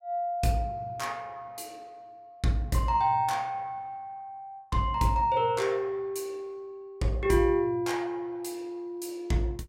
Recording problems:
none

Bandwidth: 16 kHz